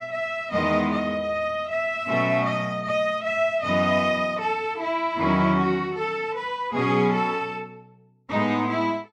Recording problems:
none

